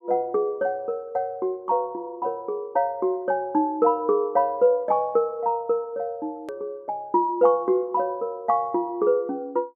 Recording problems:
hard cut with a click; at 6.5 s

